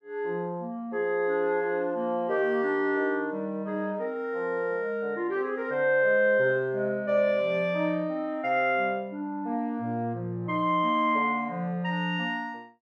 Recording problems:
none

